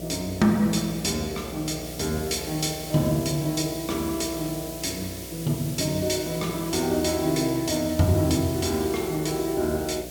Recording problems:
electrical hum; 60 Hz, harmonics up to 720 Hz, SNR 15 dB
hiss; slope +3 dB per octave, SNR 12 dB

